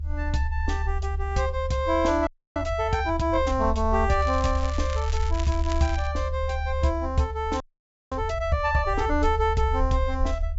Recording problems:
treble cut off; nothing above 8 kHz
rumble; below 74 Hz, strongest tone 74 Hz, SNR 4 dB
audio freezing; at 2.5 s and at 7.5 s for 0.5 s
crackling; from 4 to 6 s; loose cable, SNR 15 dB

